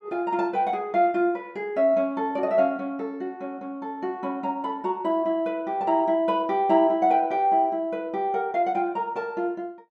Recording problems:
none

